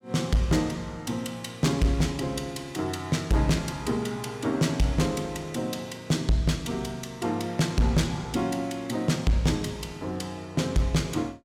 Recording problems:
distorted audio; hard clipping, signal-to-distortion ratio 11 dB

